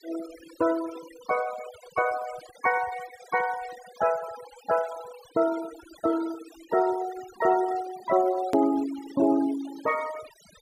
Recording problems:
denoising artefacts; signal-to-artefact ratio 16 dB
hard cut with a click; at 8.5 s

